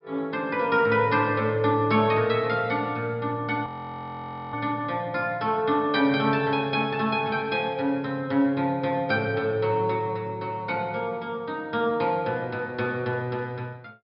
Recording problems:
treble missing; nothing above 5.5 kHz
frozen audio; at 3.5 s for 1 s

